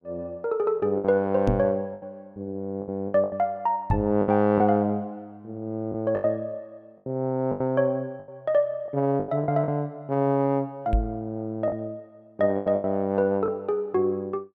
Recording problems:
packet loss; 9% of the sound replaced, filled with the last packet
knock on the microphone; at 1.5 s, at 4 s and at 11 s; peak +4 dB vs average level

